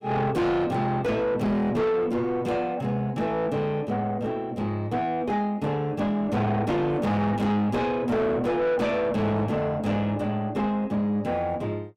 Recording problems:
distortion; soft clipping, signal-to-distortion ratio 7 dB

